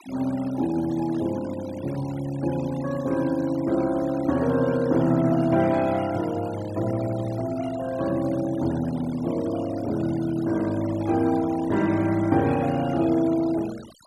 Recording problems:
noise reduction artefacts; signal-to-artefact ratio 19 dB

